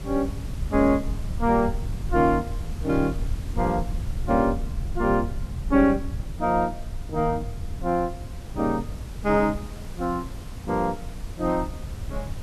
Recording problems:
hiss; slope -4 dB per octave, SNR 20 dB
low-frequency rumble; below 94 Hz, SNR 9 dB

